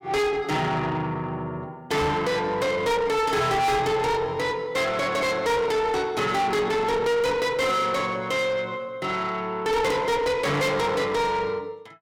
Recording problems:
distortion; soft clipping, signal-to-distortion ratio 6 dB
knock on the microphone; at 2 s; peak +2 dB vs average level

